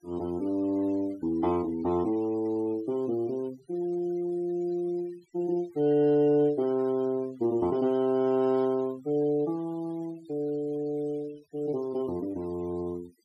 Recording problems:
denoising artefacts; signal-to-artefact ratio 24 dB

